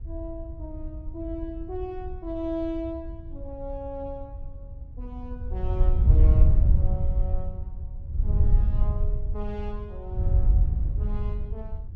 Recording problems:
wind on the microphone; below 74 Hz, SNR -11 dB

